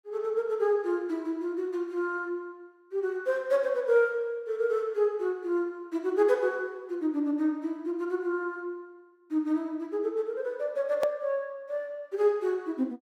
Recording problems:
hard cut with a click; at 11 s

